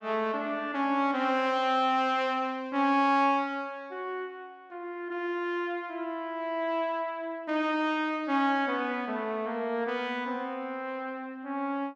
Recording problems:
none

